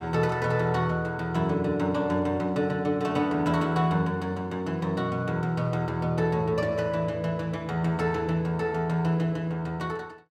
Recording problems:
none

